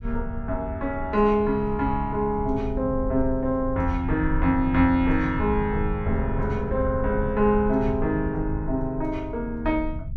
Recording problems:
low-frequency rumble; below 84 Hz, SNR 8 dB

